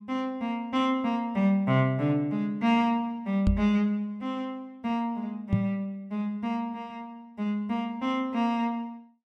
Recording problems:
knock on the microphone; at 3.5 s and at 5.5 s; peak +6 dB vs average level

